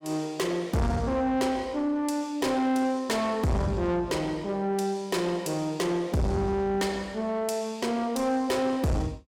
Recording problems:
distortion; soft clipping, signal-to-distortion ratio 8 dB

